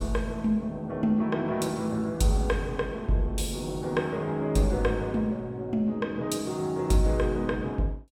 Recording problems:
none

